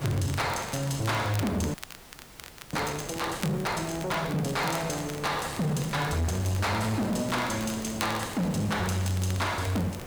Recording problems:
distortion; hard clipping, signal-to-distortion ratio 10 dB
hiss; slope -6 dB per octave, SNR 12 dB
crackling; vinyl, SNR 15 dB
frozen audio; at 1.5 s for 1 s

